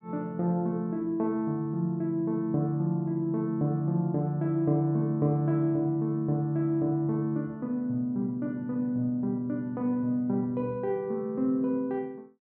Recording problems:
none

